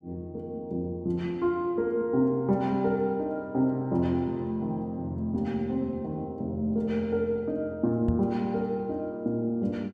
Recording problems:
microphone bump; at 8 s; peak +4 dB vs average level

